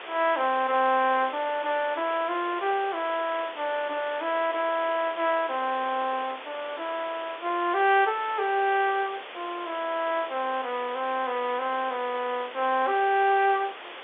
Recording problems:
phone line; 280 Hz to 3.9 kHz, G.711
hiss; SNR 13 dB

